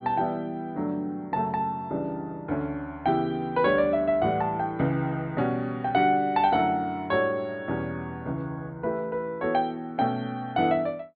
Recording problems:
low-pass filter; nothing above 4.5 kHz

